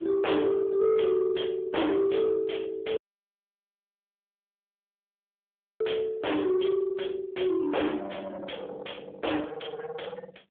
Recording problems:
phone line; 240 Hz to 3.5 kHz, AMR-NB
distorted audio; soft clipping, signal-to-distortion ratio 6 dB
audio cutting out; at 3 s for 3 s

